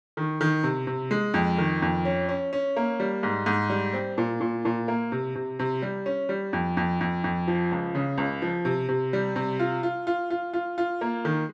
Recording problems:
none

